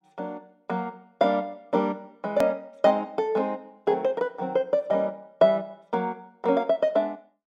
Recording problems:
hard cut with a click; at 2.5 s

